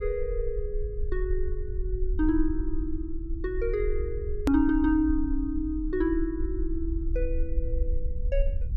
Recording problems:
rumble; below 52 Hz, SNR 4 dB
hard cut with a click; at 4.5 s

